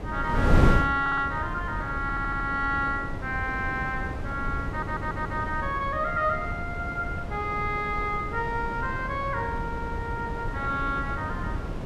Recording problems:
wind on the microphone; below 270 Hz, SNR 3 dB
audio stuttering; 4 times, first at 1 s

